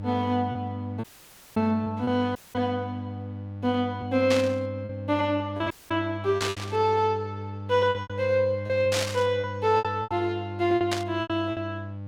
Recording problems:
mains hum; 50 Hz, harmonics up to 800 Hz, SNR 10 dB
packet loss; 8% of the sound replaced, filled with repeated pitch periods
dropout; at 1 s for 0.5 s, at 2.5 s and at 5.5 s
static burst; 4 times, first at 4.5 s; peak +2 dB vs average level

